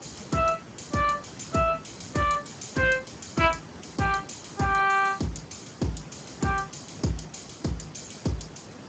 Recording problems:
lossy compression; Speex, log-spectral distance 12 dB, nothing above 7.3 kHz
hiss; slope -5 dB per octave, SNR 16 dB

